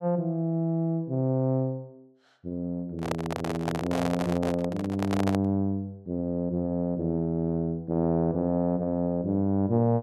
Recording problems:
microphone handling noise; from 3 to 5.5 s; peak +1 dB vs average level

